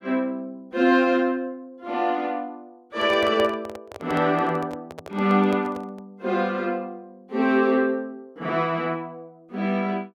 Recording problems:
microphone handling noise; from 3 to 6 s; peak -3 dB vs average level

